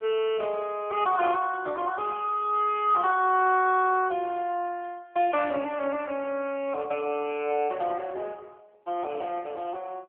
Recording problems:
telephone audio; 280 Hz to 3.3 kHz, AMR-NB

